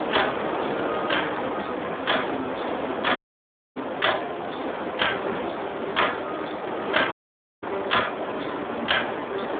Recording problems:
telephone audio; 220 Hz to 3.6 kHz, Speex
hiss; SNR 2 dB
dropout; at 3 s for 0.5 s and at 7 s for 0.5 s

